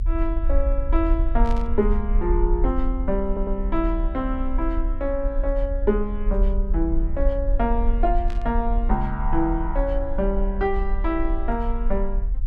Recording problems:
rumble; below 44 Hz, SNR 0 dB
burst of static; at 1.5 s and at 8.5 s; peak -11 dB vs average level
audio stuttering; at 3.5 s

